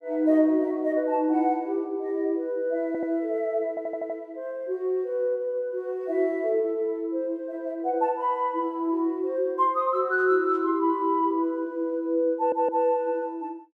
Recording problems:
stutter; at 3 s, at 3.5 s and at 12 s

